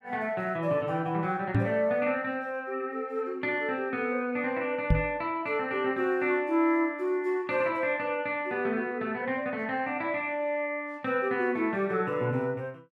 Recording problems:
microphone thump; at 1.5 s and at 5 s; peak +8 dB vs average level

